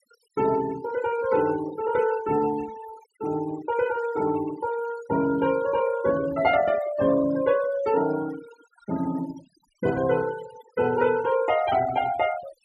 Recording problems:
noise reduction artefacts; signal-to-artefact ratio 16 dB

